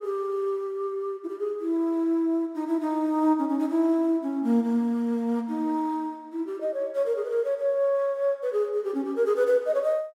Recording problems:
none

